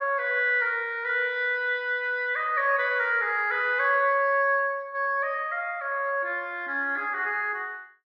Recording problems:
low-pass filter; nothing above 6.2 kHz

